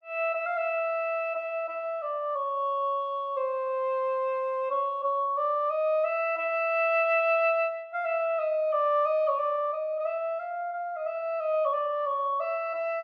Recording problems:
none

